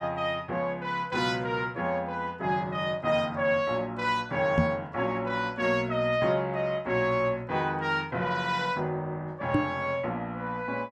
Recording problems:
knock on the microphone; at 4.5 s and at 9.5 s; peak +7 dB vs average level

